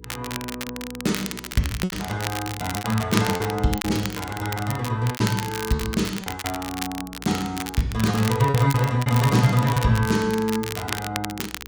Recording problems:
hum; 60 Hz, harmonics up to 480 Hz, SNR 22 dB
crackle; vinyl, SNR 9 dB
lost packets; 7% of the sound replaced, filled with repeated pitch periods

